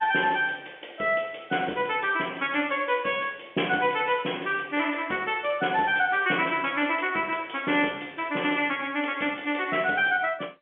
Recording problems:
phone line; 190 Hz to 3.4 kHz, G.711

